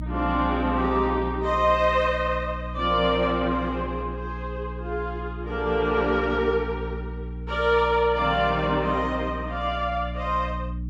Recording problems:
electrical hum; 60 Hz, harmonics up to 300 Hz, SNR 10 dB

